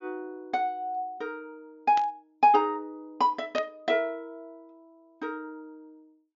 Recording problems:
treble missing; nothing above 7.1 kHz
burst of static; at 2 s and at 3.5 s; peak -6 dB vs average level

